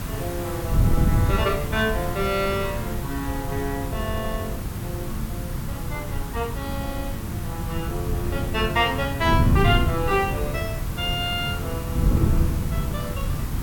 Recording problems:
background hiss; SNR 10 dB
wind on the microphone; below 150 Hz, SNR 0 dB

